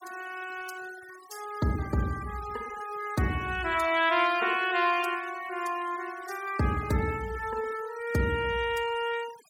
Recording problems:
denoising artefacts; signal-to-artefact ratio 18 dB

